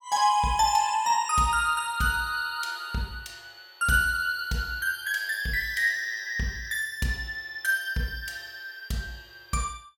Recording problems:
none

